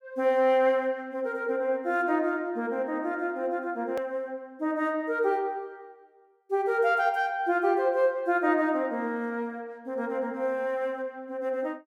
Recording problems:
edit click; at 4 s

